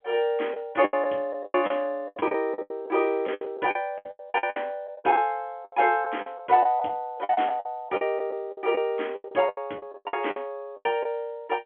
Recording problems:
phone line; 260 Hz to 3.4 kHz, G.711
packet loss; 18% of the sound replaced, filled with the last packet

